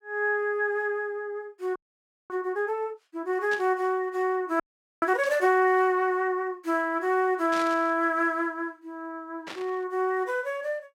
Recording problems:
frozen audio; at 2 s for 0.5 s and at 4.5 s
burst of static; 4 times, first at 3.5 s; peak -7 dB vs average level

